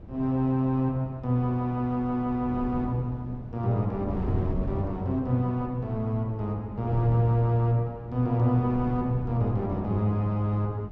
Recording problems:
wind noise; below 220 Hz, SNR 11 dB

